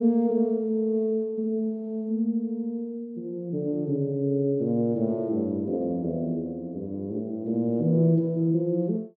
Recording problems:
none

